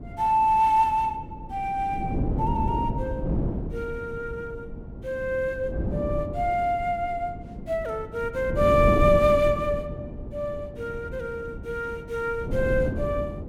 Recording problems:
wind noise; below 270 Hz, SNR 6 dB

